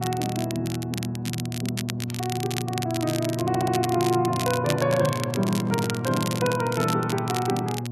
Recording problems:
electrical hum; 60 Hz, harmonics up to 720 Hz, SNR 5 dB
crackle; vinyl, SNR 8 dB
audio stuttering; at 3.5 s
microphone handling noise; from 5 to 7 s; peak -7 dB vs average level

